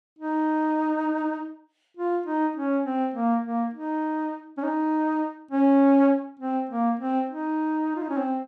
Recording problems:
none

